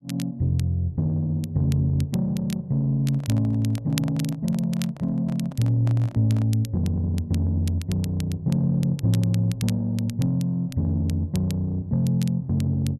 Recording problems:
crackling; vinyl, SNR 19 dB
microphone handling noise; from 3 to 6.5 s; peak -10 dB vs average level

